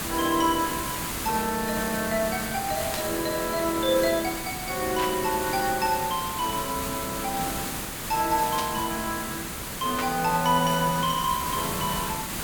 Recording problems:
background hiss; slope -3 dB per octave, SNR 4 dB
static burst; 4 times, first at 3 s; peak -1 dB vs average level

